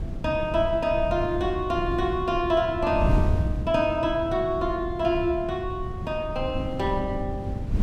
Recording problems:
wind on the microphone; below 150 Hz, SNR 6 dB

